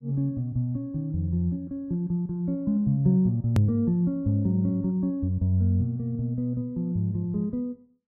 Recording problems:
edit click; at 3.5 s

